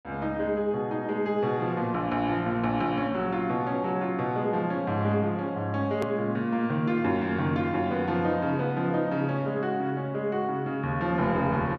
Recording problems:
treble cut off; nothing above 8 kHz
hard cut with a click; at 6 s

